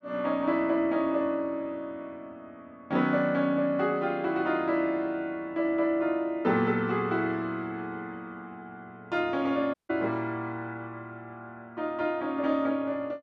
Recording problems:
dropout; at 9.5 s

